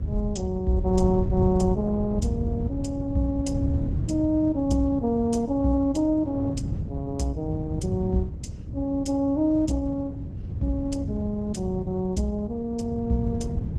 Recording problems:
lossy compression; Opus, log-spectral distance 2 dB, nothing above 14.1 kHz
electrical hum; 60 Hz, harmonics up to 600 Hz, SNR 26 dB
low-frequency rumble; below 110 Hz, SNR 2 dB

